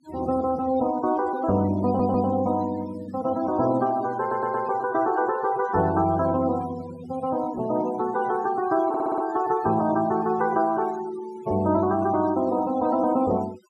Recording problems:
noise reduction artefacts; signal-to-artefact ratio 17 dB
audio stuttering; at 2 s, at 4 s and at 9 s

